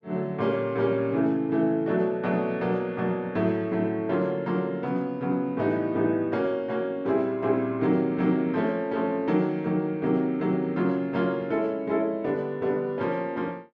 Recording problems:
none

